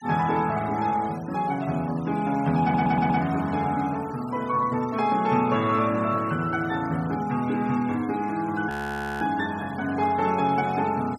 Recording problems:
noise reduction artefacts; signal-to-artefact ratio 20 dB
stutter; at 2.5 s
audio freezing; at 8.5 s for 0.5 s

